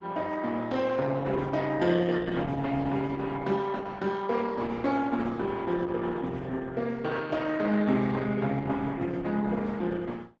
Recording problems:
codec artefacts; Opus, log-spectral distance 4 dB, nothing above 7.6 kHz

